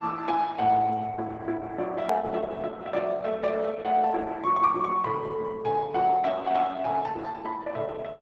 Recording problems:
lossy codec; Opus, log-spectral distance 3 dB, nothing above 13.1 kHz
edit click; at 2 s

